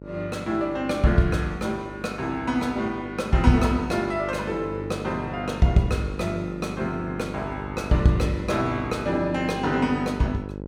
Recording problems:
electrical hum; 50 Hz, harmonics up to 1.1 kHz, SNR 11 dB

